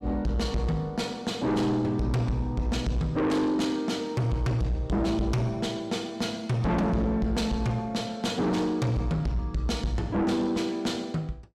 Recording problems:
distorted audio; soft clipping, signal-to-distortion ratio 7 dB

